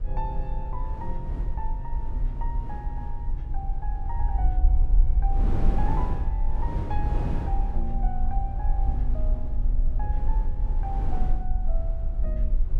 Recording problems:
low-frequency rumble; below 48 Hz, strongest tone 22 Hz, SNR -9 dB
wind on the microphone; below 170 Hz, SNR -2 dB

